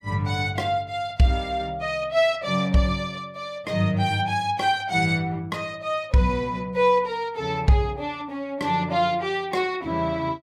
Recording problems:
none

